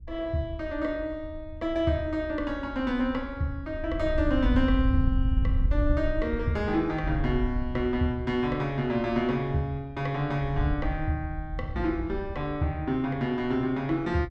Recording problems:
wind on the microphone; below 80 Hz, SNR 4 dB

